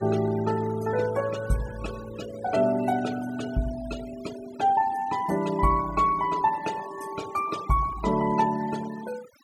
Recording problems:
denoising artefacts; signal-to-artefact ratio 17 dB

